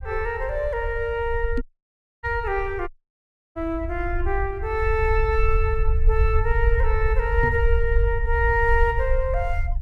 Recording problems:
rumble; below 66 Hz, SNR 1 dB
knock on the microphone; at 1.5 s and at 7.5 s; peak +2 dB vs average level
audio cutting out; at 1.5 s for 0.5 s and at 3 s for 0.5 s

